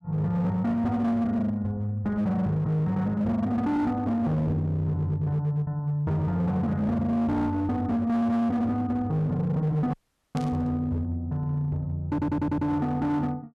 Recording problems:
distortion; hard clipping, signal-to-distortion ratio 10 dB
audio cutting out; at 10 s
static burst; at 10 s; peak -12 dB vs average level
audio stuttering; at 12 s

